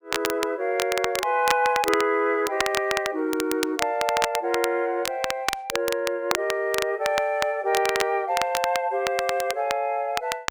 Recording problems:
crackling; vinyl, SNR 6 dB

